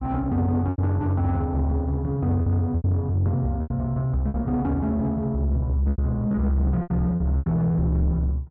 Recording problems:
distorted audio; soft clipping, signal-to-distortion ratio 10 dB
packet loss; 8% of the sound replaced, filled with repeated pitch periods

